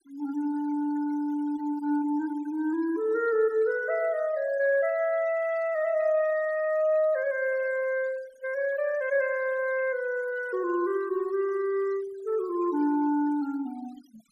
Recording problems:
noise reduction artefacts; signal-to-artefact ratio 23 dB

